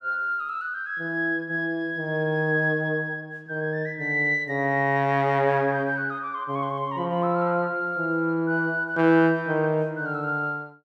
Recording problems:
none

